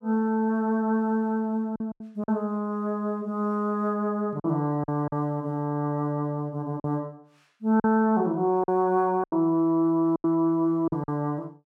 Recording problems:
lost packets; 6% of the sound replaced, filled with silence

